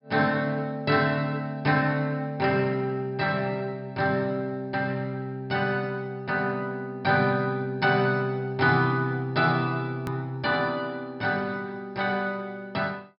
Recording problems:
treble cut off; nothing above 5.5 kHz
click at an edit; at 10 s

